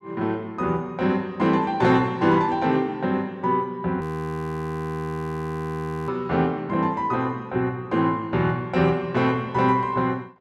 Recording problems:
frozen audio; at 4 s for 2 s

